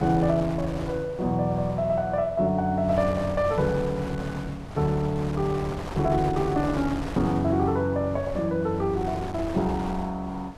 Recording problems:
wind noise; below 800 Hz, SNR 11 dB

